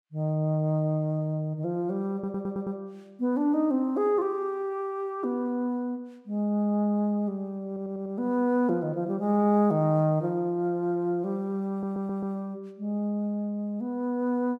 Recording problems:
audio stuttering; at 2 s, at 7.5 s and at 12 s

